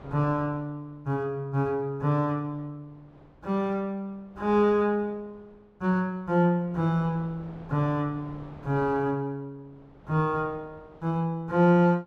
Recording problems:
wind on the microphone; below 720 Hz, SNR 24 dB

